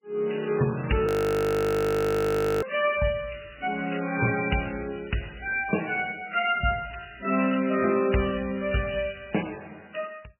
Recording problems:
codec artefacts; MP3, log-spectral distance 7 dB, nothing above 18.9 kHz
frozen audio; at 1 s for 1.5 s

